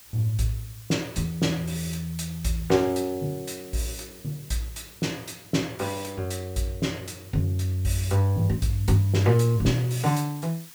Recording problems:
hiss; slope +1 dB per octave, SNR 19 dB

